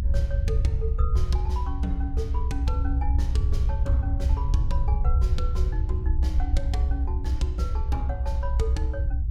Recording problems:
rumble; below 70 Hz, SNR -9 dB

